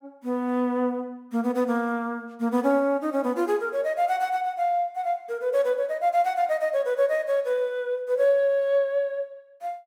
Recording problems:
none

